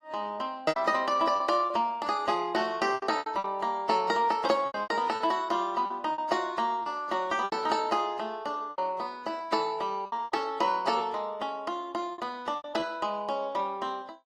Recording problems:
lossy codec; AAC, log-spectral distance 2 dB, nothing above 17.7 kHz
lost packets; 9% of the sound replaced, filled with repeated pitch periods

